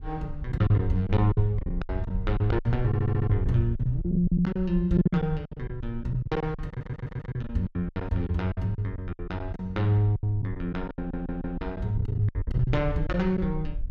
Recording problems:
rumble; below 64 Hz, SNR 10 dB
packet loss; 17% of the sound replaced, filled with silence
stutter; at 3 s, at 6.5 s and at 11 s

